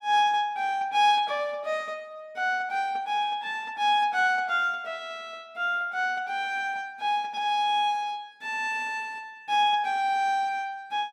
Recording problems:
none

